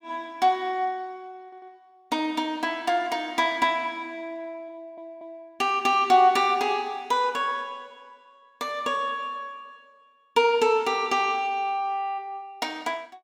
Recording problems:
audio stuttering; at 1.5 s and at 4.5 s

